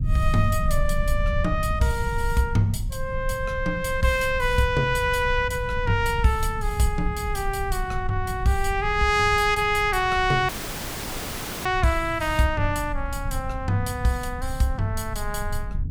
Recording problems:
low-frequency rumble; below 82 Hz, SNR 7 dB
dropout; at 10 s for 1 s

